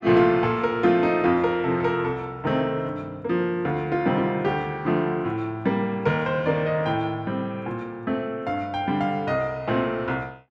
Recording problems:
none

